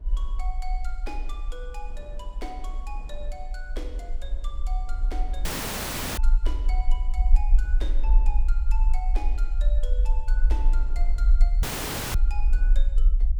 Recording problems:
low-frequency rumble; below 42 Hz, strongest tone 26 Hz, SNR -15 dB
wind on the microphone; below 450 Hz, SNR 12 dB
audio cutting out; at 5.5 s for 0.5 s and at 12 s for 0.5 s

